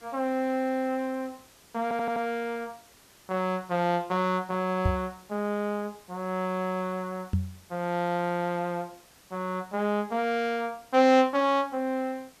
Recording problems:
hiss; slope -2 dB per octave, SNR 26 dB
audio stuttering; at 2 s
microphone thump; at 5 s and at 7.5 s; peak +5 dB vs average level

